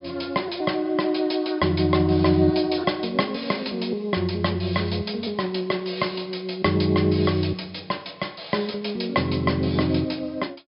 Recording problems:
low-pass filter; nothing above 5.5 kHz

